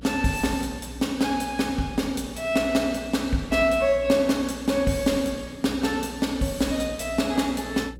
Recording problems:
electrical hum; 60 Hz, harmonics up to 600 Hz, SNR 19 dB

